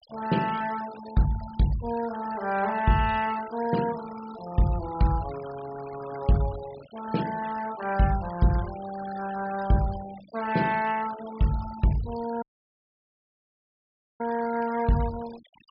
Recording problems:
treble missing; nothing above 5.5 kHz
noise reduction artefacts; signal-to-artefact ratio 17 dB
audio cutting out; at 12 s for 2 s

